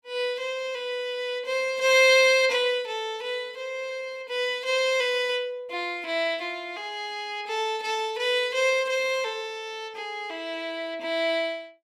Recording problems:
none

